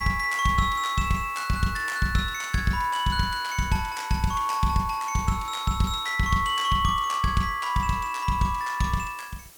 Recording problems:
hiss; slope -1 dB per octave, SNR 22 dB

